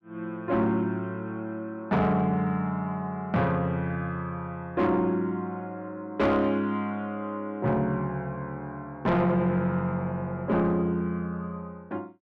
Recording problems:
distorted audio; soft clipping, signal-to-distortion ratio 11 dB

